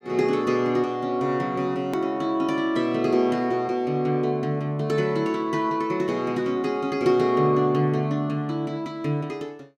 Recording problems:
click at an edit; at 2 s

